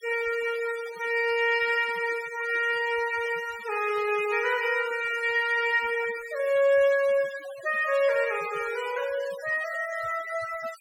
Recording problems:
noise reduction artefacts; signal-to-artefact ratio 17 dB

